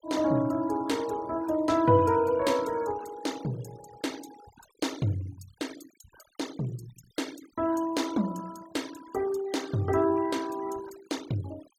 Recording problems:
denoising artefacts; signal-to-artefact ratio 19 dB

